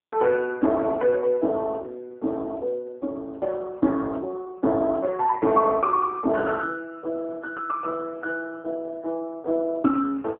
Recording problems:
phone line; 260 Hz to 2 kHz, AMR-NB

